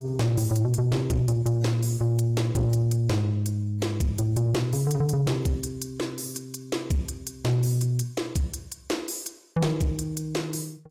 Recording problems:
codec artefacts; AAC, log-spectral distance 3 dB, nothing above 15.1 kHz
distorted audio; soft clipping, signal-to-distortion ratio 12 dB

